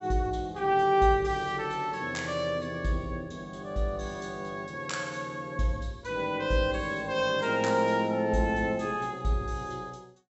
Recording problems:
low-pass filter; nothing above 7.7 kHz

